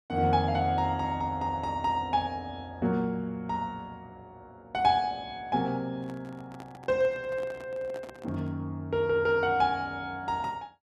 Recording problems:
handling noise; from 6 to 8.5 s; peak -11 dB vs average level

